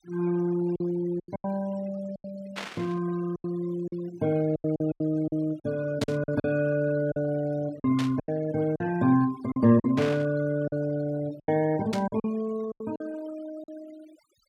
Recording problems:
denoising artefacts; signal-to-artefact ratio 19 dB
lost packets; 10% of the sound replaced, filled with silence
static burst; 5 times, first at 2.5 s; peak -3 dB vs average level

